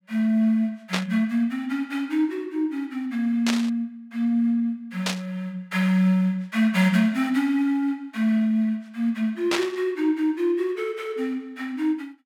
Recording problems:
static burst; 4 times, first at 1 s; peak +3 dB vs average level

